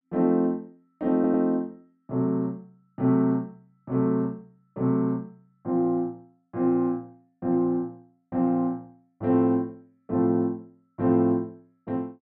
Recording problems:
stutter; at 1 s

